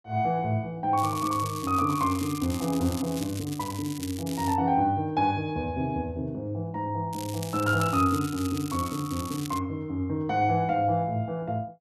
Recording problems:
crackle; from 1 to 4.5 s and from 7 to 9.5 s; loose cable, SNR 13 dB

